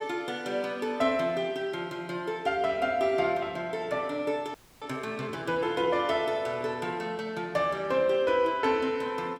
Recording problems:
frozen audio; at 4.5 s

